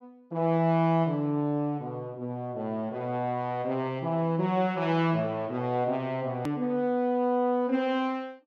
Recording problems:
click at an edit; at 6.5 s

